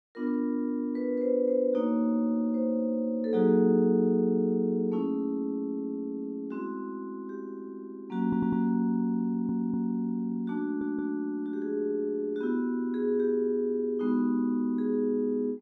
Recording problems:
stutter; at 8 s, at 9.5 s and at 11 s

